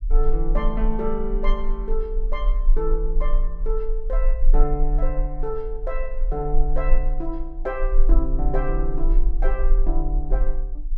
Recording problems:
rumble; below 34 Hz, strongest tone 24 Hz, SNR -4 dB

